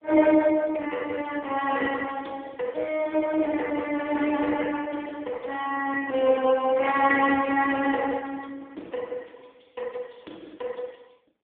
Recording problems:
telephone audio; 240 Hz to 3.4 kHz, AMR-NB

